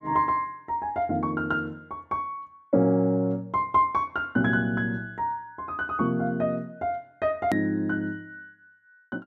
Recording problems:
edit click; at 7.5 s

